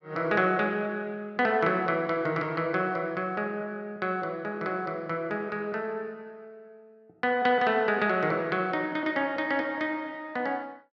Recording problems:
none

